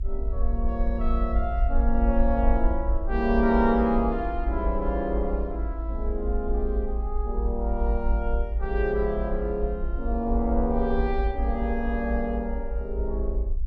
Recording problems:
low-frequency rumble; below 54 Hz, SNR 1 dB

